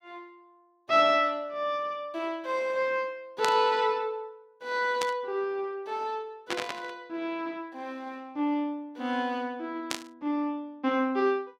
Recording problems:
burst of static; 4 times, first at 3.5 s; peak +3 dB vs average level

